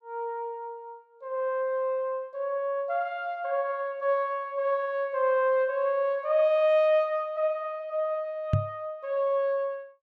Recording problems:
microphone bump; at 8.5 s; peak +6 dB vs average level

